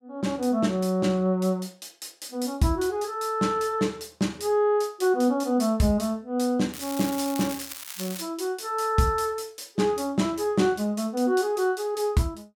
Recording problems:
crackle; from 6.5 to 8 s; loose cable, SNR 11 dB

